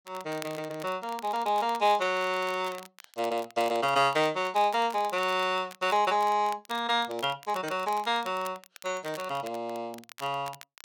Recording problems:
crackle; vinyl, SNR 19 dB

